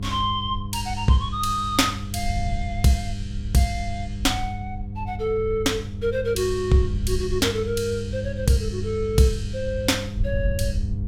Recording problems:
mains hum; 50 Hz, harmonics up to 500 Hz, SNR 9 dB
wind noise; below 78 Hz, SNR 9 dB

